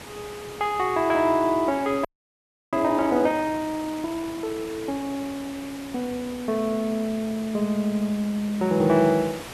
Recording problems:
background hiss; slope -4 dB per octave, SNR 15 dB
audio freezing; at 2 s for 0.5 s

